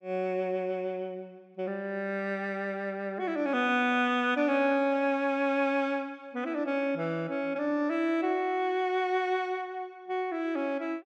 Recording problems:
none

